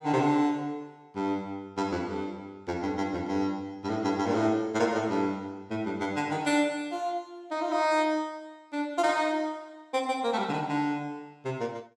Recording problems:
none

